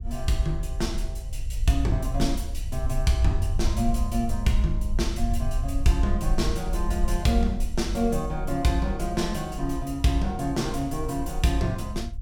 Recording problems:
rumble; below 58 Hz, SNR 4 dB

